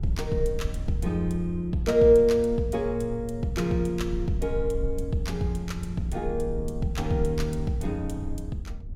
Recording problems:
rumble; below 72 Hz, SNR 10 dB

